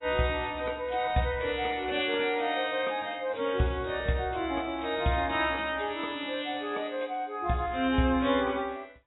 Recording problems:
lossy codec; AAC, log-spectral distance 5 dB, nothing above 3.7 kHz

